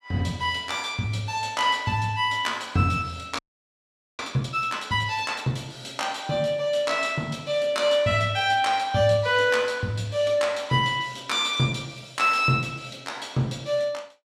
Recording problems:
audio freezing; at 3.5 s for 1 s

